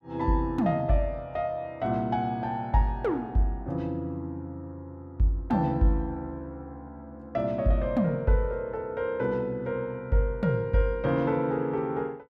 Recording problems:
none

